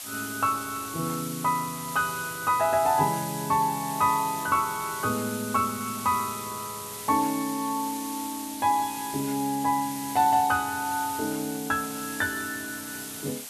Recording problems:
background hiss; SNR 9 dB

